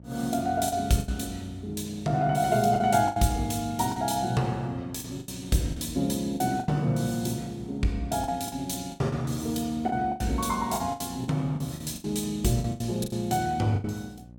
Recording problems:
hum; 60 Hz, harmonics up to 660 Hz, SNR 20 dB
lost packets; 10% of the sound replaced, filled with the last packet

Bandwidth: 17.5 kHz